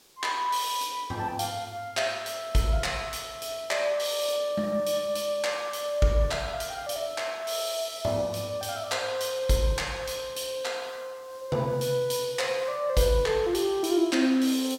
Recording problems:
hiss; SNR 26 dB

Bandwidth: 16.5 kHz